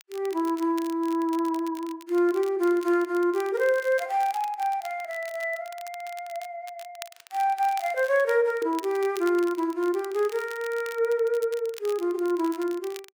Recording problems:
crackling; vinyl, SNR 20 dB

